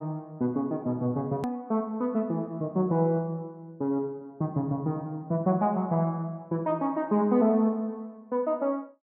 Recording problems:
click at an edit; at 1.5 s

